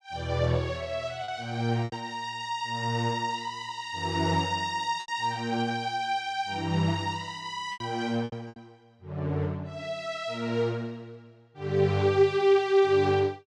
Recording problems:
lost packets; 3% of the sound replaced, filled with repeated pitch periods

